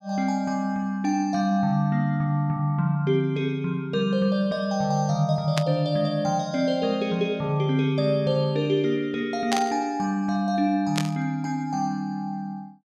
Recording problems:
static burst; at 5.5 s, at 9.5 s and at 11 s; peak +1 dB vs average level

